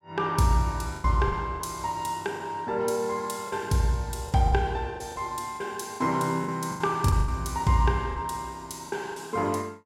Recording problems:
packet loss; 9% of the sound replaced, filled with the last packet

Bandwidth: 16 kHz